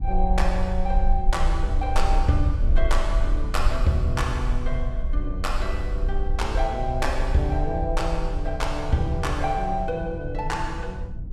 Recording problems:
rumble; below 50 Hz, strongest tone 20 Hz, SNR 1 dB
wind on the microphone; below 130 Hz, SNR 11 dB

